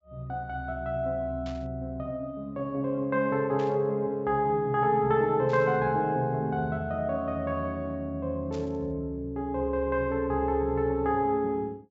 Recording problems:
treble cut off; nothing above 8 kHz
burst of static; 4 times, first at 1.5 s; peak -14 dB vs average level

